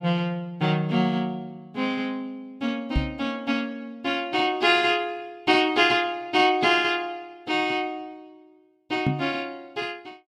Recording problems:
microphone bump; at 3 s and at 9 s; peak +4 dB vs average level

